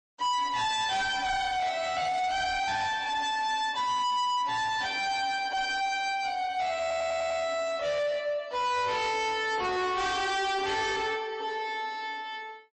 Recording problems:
lossy codec; MP3, log-spectral distance 3 dB, nothing above 8 kHz
distorted audio; soft clipping, signal-to-distortion ratio 7 dB
stutter; at 7 s

